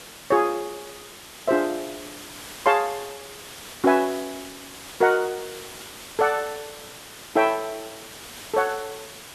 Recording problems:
hiss; slope -1 dB per octave, SNR 15 dB

